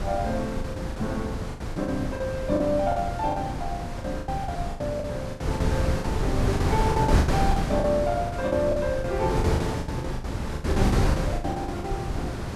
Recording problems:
wind on the microphone; below 350 Hz, SNR -1 dB
packet loss; 16% of the sound replaced, filled with the last packet

